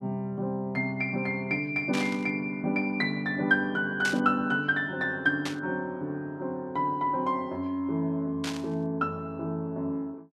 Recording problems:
static burst; 4 times, first at 2 s; peak 0 dB vs average level

